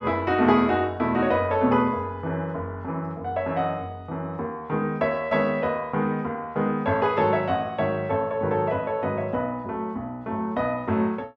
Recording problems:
none

